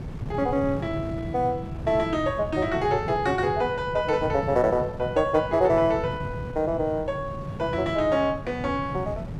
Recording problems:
wind on the microphone; below 200 Hz, SNR 10 dB

